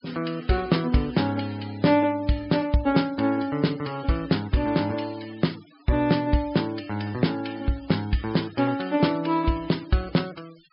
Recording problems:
treble cut off; nothing above 5.2 kHz
noise reduction artefacts; signal-to-artefact ratio 22 dB

